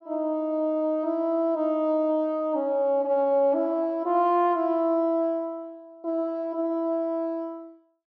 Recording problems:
none

